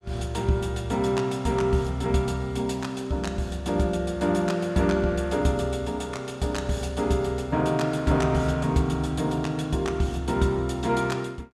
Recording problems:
none

